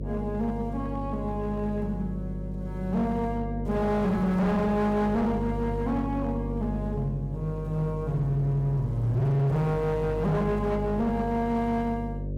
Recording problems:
distorted audio; hard clipping, signal-to-distortion ratio 10 dB
hum; 50 Hz, harmonics up to 600 Hz, SNR 7 dB

